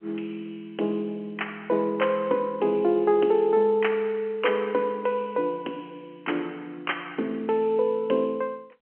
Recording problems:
telephone audio; 240 Hz to 3.2 kHz, G.711

